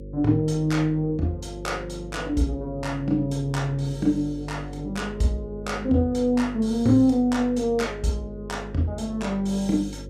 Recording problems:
electrical hum; 50 Hz, harmonics up to 550 Hz, SNR 14 dB

